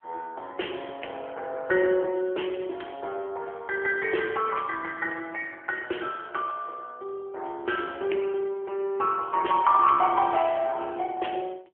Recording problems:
phone line; 300 Hz to 3.2 kHz, AMR-NB

